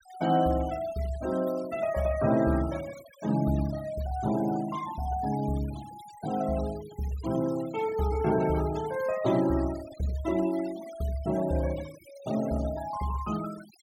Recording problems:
noise reduction artefacts; signal-to-artefact ratio 18 dB

